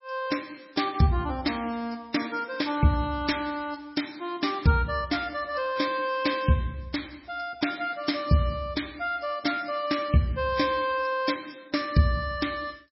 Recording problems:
lossy compression; MP3, log-spectral distance 7 dB, nothing above 5.5 kHz

